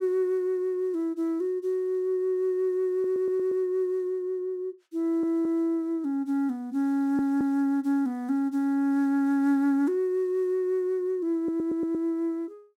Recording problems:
audio stuttering; 4 times, first at 3 s

